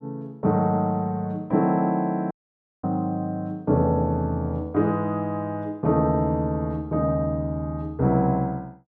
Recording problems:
audio cutting out; at 2.5 s for 0.5 s

